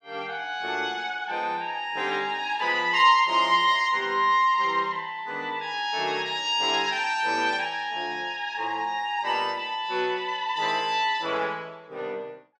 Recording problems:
none

